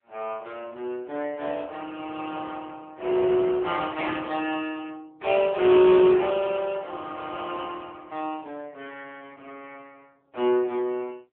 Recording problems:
phone line; 260 Hz to 3.5 kHz, AMR-NB

